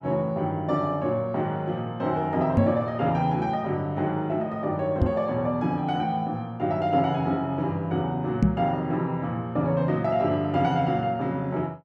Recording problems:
microphone bump; at 2.5 s, at 5 s and at 8.5 s; peak +8 dB vs average level

